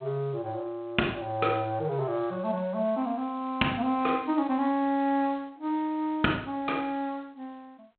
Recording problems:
telephone audio; 220 Hz to 3.6 kHz, G.726

